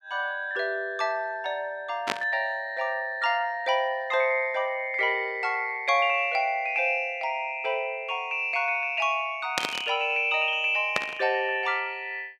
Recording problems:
burst of static; at 2 s, at 9.5 s and at 11 s; peak +4 dB vs average level

